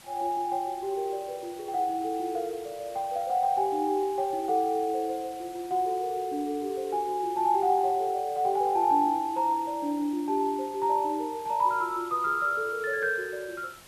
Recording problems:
background hiss; slope -1 dB per octave, SNR 21 dB

